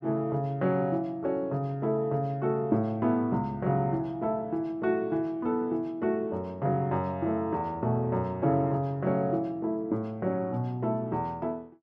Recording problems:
none

